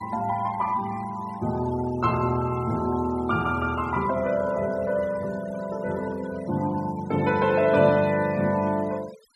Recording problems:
denoising artefacts; signal-to-artefact ratio 20 dB

